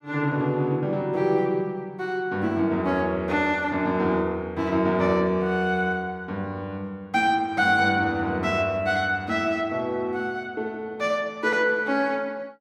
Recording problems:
none

